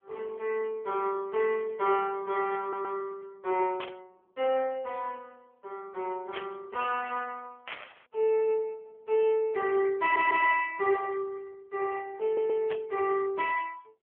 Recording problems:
telephone audio; 300 Hz to 3.3 kHz, AMR-NB
stutter; at 2.5 s, at 10 s and at 12 s
static burst; 4 times, first at 4 s; peak -5 dB vs average level

